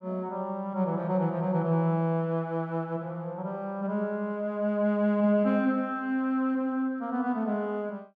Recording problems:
none

